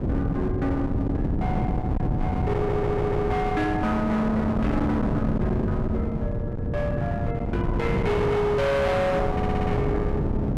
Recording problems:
distortion; hard clipping, uneven, signal-to-distortion ratio 6 dB
wind noise; below 290 Hz, SNR 1 dB
audio stuttering; at 2.5 s and at 9.5 s

